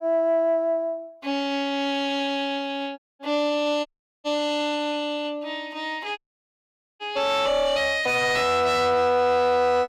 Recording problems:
distortion; soft clipping, signal-to-distortion ratio 11 dB
audio cutting out; at 3 s, at 4 s and at 6 s for 1 s

